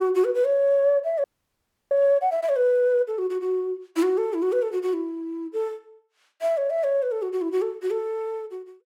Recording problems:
audio freezing; at 1 s for 0.5 s

